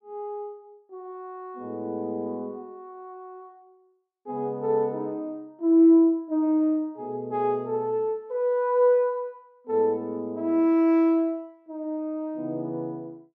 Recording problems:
none

